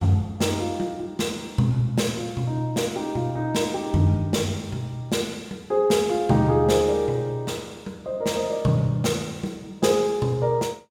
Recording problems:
none

